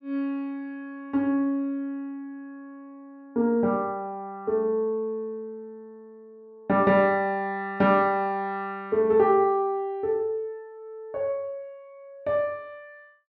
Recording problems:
none

